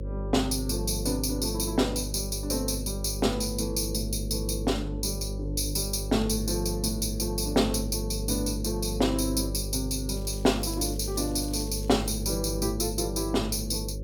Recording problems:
electrical hum; 50 Hz, harmonics up to 550 Hz, SNR 6 dB
crackling; from 10 to 12 s; loose cable, SNR 24 dB

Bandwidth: 17.5 kHz